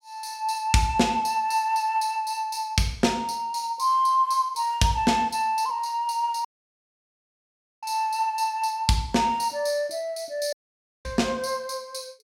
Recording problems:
audio cutting out; at 6.5 s for 1.5 s and at 11 s for 0.5 s

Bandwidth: 16.5 kHz